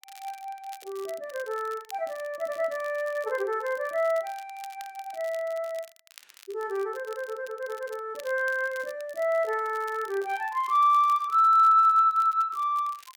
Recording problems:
crackle; vinyl, SNR 25 dB

